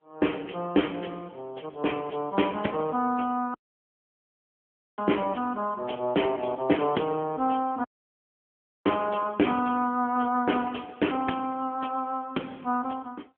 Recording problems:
telephone audio; 220 Hz to 3.3 kHz, AMR-NB
dropout; at 3.5 s for 1.5 s and at 8 s for 1 s

